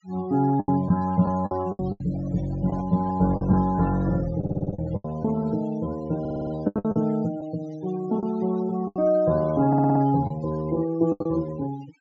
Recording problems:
treble missing; nothing above 8 kHz
denoising artefacts; signal-to-artefact ratio 18 dB
lost packets; 9% of the sound replaced, filled with the last packet
handling noise; from 2 to 3.5 s; peak -12 dB vs average level
stutter; at 4.5 s, at 6 s and at 9.5 s

